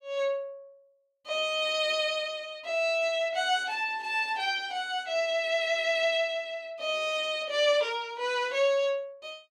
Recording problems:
none

